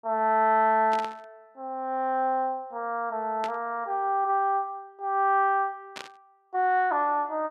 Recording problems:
burst of static; at 1 s, at 3.5 s and at 6 s; peak -8 dB vs average level

